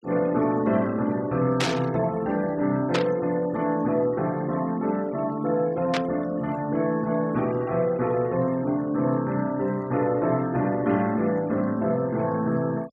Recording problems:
denoising artefacts; signal-to-artefact ratio 22 dB
burst of static; at 1.5 s, at 3 s and at 6 s; peak +2 dB vs average level

